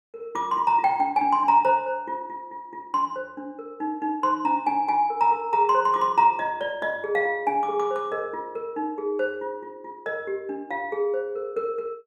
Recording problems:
none

